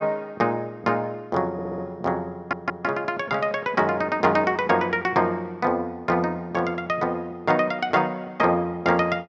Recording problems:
audio stuttering; at 1.5 s and at 2.5 s

